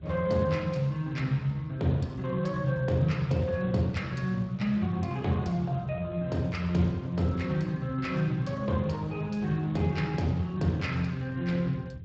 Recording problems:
codec artefacts; Speex, log-spectral distance 3 dB, nothing above 16 kHz
rumble; below 160 Hz, SNR 17 dB

